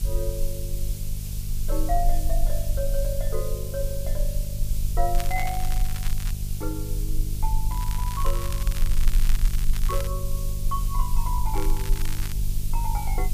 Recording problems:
hum; 50 Hz, harmonics up to 400 Hz, SNR 1 dB
background hiss; SNR 5 dB
rumble; below 36 Hz, strongest tone 22 Hz, SNR -4 dB
crackle; from 5 to 6.5 s, from 7.5 to 10 s and at 12 s; loose cable, SNR 6 dB

